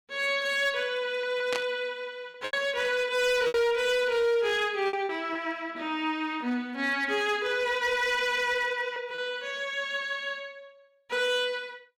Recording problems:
distorted audio; hard clipping, signal-to-distortion ratio 12 dB
packet loss; 3% of the sound replaced, filled with repeated pitch periods
static burst; at 1.5 s; peak -1 dB vs average level

